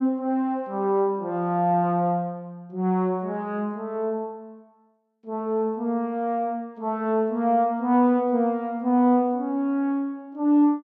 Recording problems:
none

